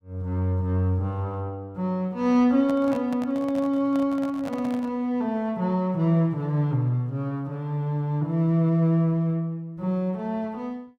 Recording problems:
microphone handling noise; from 2.5 to 5 s; peak -9 dB vs average level

